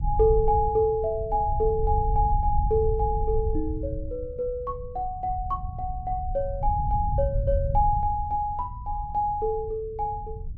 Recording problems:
low-frequency rumble; below 86 Hz, SNR 5 dB

